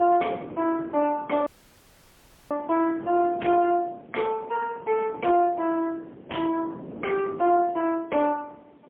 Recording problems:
phone line; 240 Hz to 2.5 kHz, AMR-NB, then MP3
distorted audio; soft clipping, signal-to-distortion ratio 8 dB
hiss; SNR 27 dB
wind on the microphone; below 490 Hz, SNR 16 dB
dropout; at 1.5 s for 1 s

